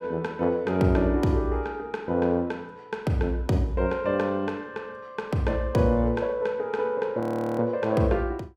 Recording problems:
audio freezing; at 7 s

